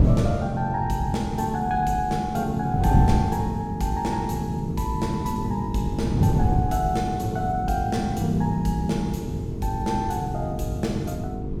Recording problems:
electrical hum; 50 Hz, harmonics up to 450 Hz, SNR 9 dB
wind on the microphone; below 180 Hz, SNR 2 dB

